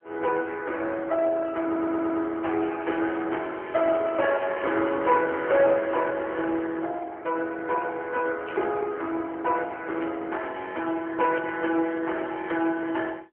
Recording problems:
telephone audio; 280 Hz to 3.1 kHz, AMR-NB
stutter; at 1.5 s
burst of static; 4 times, first at 3 s; peak -10 dB vs average level

